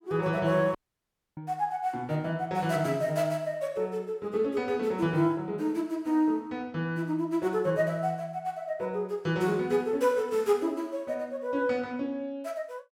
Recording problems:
audio cutting out; at 1 s for 0.5 s

